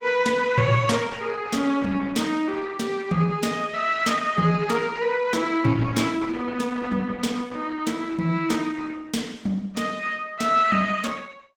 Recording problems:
lossy codec; Opus, log-spectral distance 4 dB, nothing above 19 kHz

